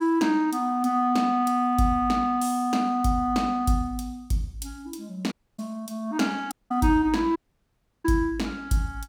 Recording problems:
dropout; at 5.5 s, at 6.5 s and at 7.5 s for 0.5 s

